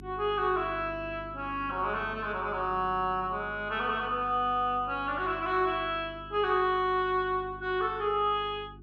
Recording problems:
hum; 50 Hz, harmonics up to 400 Hz, SNR 18 dB

